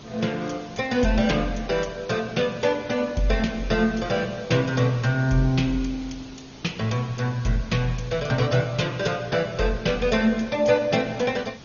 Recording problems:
lossy compression; Opus, then MP2, log-spectral distance 5 dB, nothing above 6.7 kHz
hiss; SNR 20 dB

